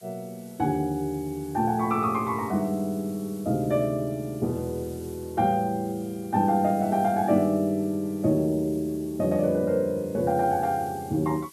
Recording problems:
hiss; slope +3 dB per octave, SNR 23 dB

